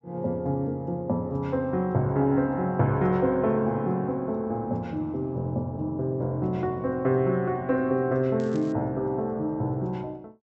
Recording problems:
low-pass filter; nothing above 7.8 kHz
crackle; at 8.5 s; loose cable, SNR 27 dB

